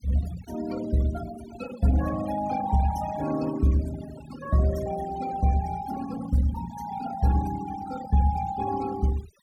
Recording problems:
noise reduction artefacts; signal-to-artefact ratio 15 dB

